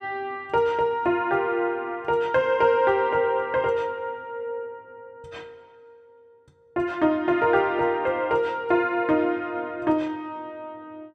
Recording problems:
none

